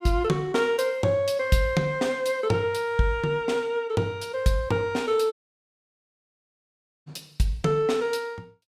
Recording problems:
audio cutting out; at 5.5 s for 1.5 s

